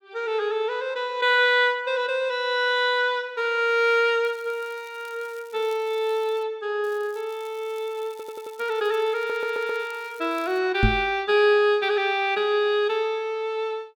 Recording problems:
crackle; from 4.5 to 6.5 s and from 7 to 11 s; loose cable, SNR 27 dB
stutter; at 8 s and at 9 s
knock on the microphone; at 11 s; peak +6 dB vs average level

